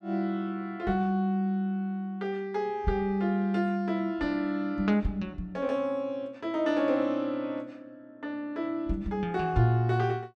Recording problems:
none

